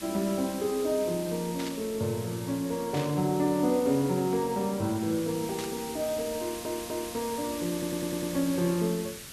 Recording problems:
background hiss; SNR 11 dB
burst of static; at 1.5 s, at 3 s and at 5.5 s; peak -5 dB vs average level
stutter; at 6.5 s and at 7.5 s

